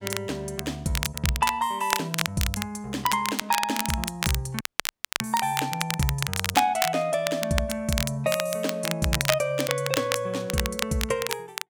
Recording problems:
crackling; vinyl, SNR 3 dB
audio cutting out; at 4.5 s for 0.5 s

